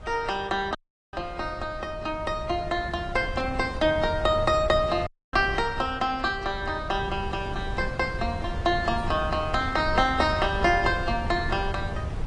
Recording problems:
lossy codec; AAC, log-spectral distance 2 dB
wind on the microphone; below 160 Hz, SNR 9 dB
audio cutting out; at 1 s and at 5 s

